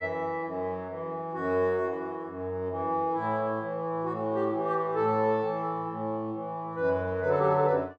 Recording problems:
none

